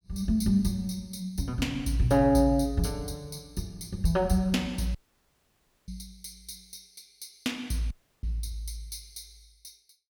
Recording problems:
dropout; at 5 s for 1 s and at 8 s

